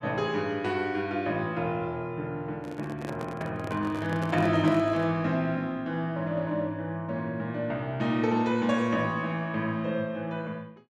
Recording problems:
handling noise; from 2.5 to 5 s; peak -4 dB vs average level

